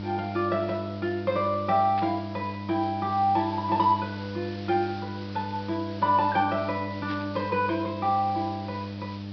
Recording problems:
treble missing; nothing above 5.5 kHz
mains hum; 50 Hz, harmonics up to 900 Hz, SNR 9 dB
hiss; slope -1 dB per octave, SNR 19 dB
static burst; at 2 s and at 7 s; peak -9 dB vs average level

